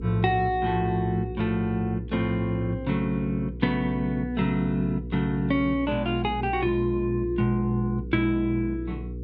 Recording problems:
electrical hum; 60 Hz, harmonics up to 480 Hz, SNR 10 dB

